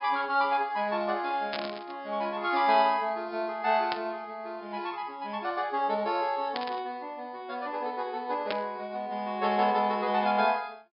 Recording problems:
treble cut off; nothing above 5.5 kHz
burst of static; 4 times, first at 1.5 s; peak 0 dB vs average level

